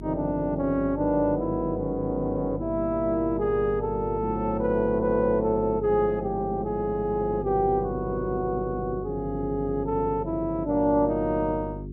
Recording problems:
hum; 50 Hz, harmonics up to 400 Hz, SNR 11 dB

